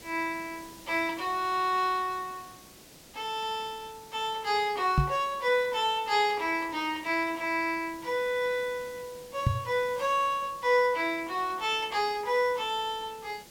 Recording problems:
background hiss; SNR 20 dB
knock on the microphone; at 5 s and at 9.5 s; peak +7 dB vs average level

